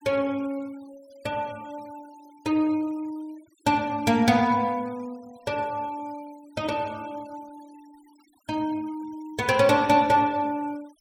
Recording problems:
denoising artefacts; signal-to-artefact ratio 26 dB

